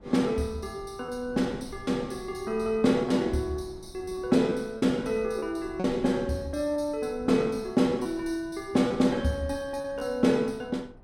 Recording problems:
wind noise; below 320 Hz, SNR 20 dB
lost packets; 4% of the sound replaced, filled with repeated pitch periods

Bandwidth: 16.5 kHz